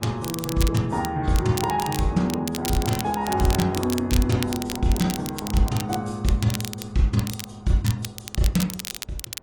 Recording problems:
lossy codec; AAC, log-spectral distance 2 dB
wind on the microphone; below 520 Hz, SNR 24 dB
crackle; vinyl, SNR 10 dB

